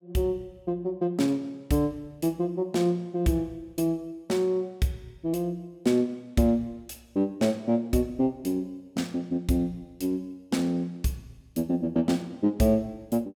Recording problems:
none

